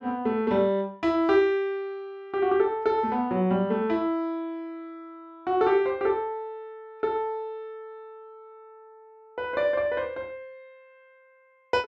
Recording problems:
none

